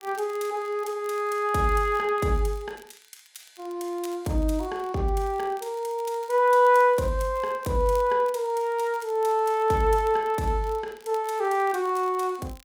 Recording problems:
crackling; vinyl, SNR 28 dB

